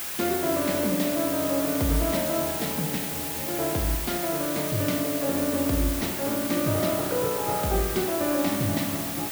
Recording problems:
background hiss; slope 0 dB per octave, SNR 3 dB

